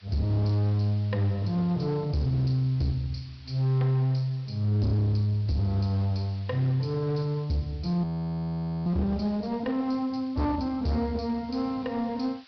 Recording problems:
treble missing; nothing above 5.5 kHz
distortion; hard clipping, uneven, signal-to-distortion ratio 9 dB
hiss; SNR 27 dB
audio freezing; at 8 s for 1 s

